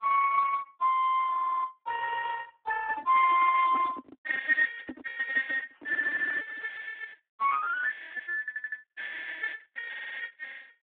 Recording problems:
telephone audio; 950 Hz to 2.8 kHz, Speex
stutter; at 1.5 s, at 8.5 s and at 10 s
microphone handling noise; from 3 to 6.5 s; peak -3 dB vs average level
frozen audio; at 6 s for 0.5 s

